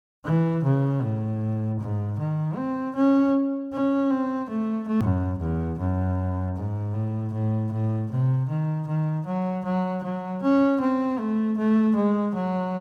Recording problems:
click at an edit; at 5 s

